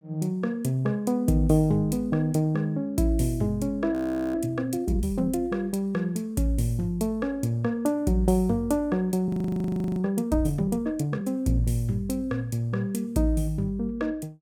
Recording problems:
frozen audio; at 4 s and at 9.5 s for 0.5 s

